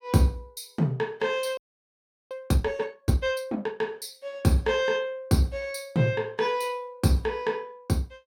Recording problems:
frozen audio; at 1.5 s for 0.5 s

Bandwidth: 16.5 kHz